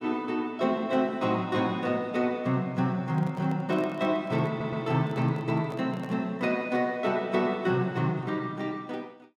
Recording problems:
handling noise; from 3 to 6 s; peak -10 dB vs average level
stutter; at 4.5 s

